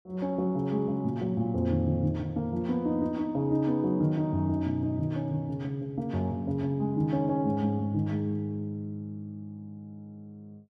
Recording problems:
none

